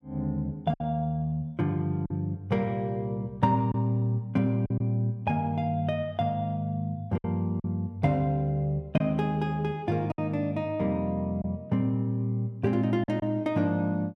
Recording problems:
lost packets; 3% of the sound replaced, filled with silence

